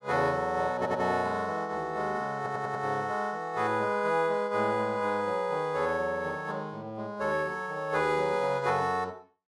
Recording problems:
stutter; at 1 s and at 2.5 s

